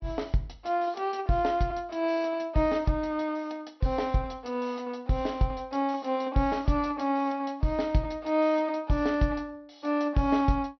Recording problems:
treble missing; nothing above 5.9 kHz

